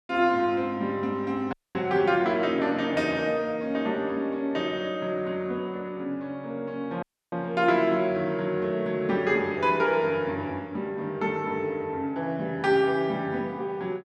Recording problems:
audio cutting out; at 1.5 s and at 7 s

